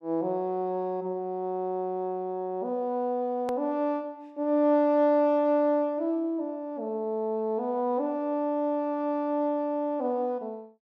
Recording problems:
edit click; at 3.5 s

